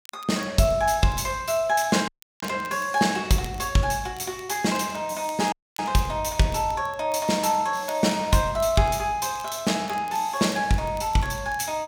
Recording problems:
crackling; vinyl, SNR 24 dB
dropout; at 2 s and at 5.5 s

